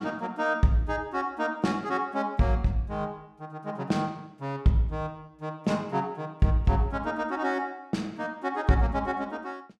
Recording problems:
none

